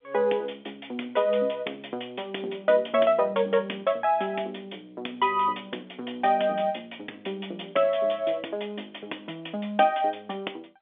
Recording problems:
phone line; 220 Hz to 3.6 kHz, G.711

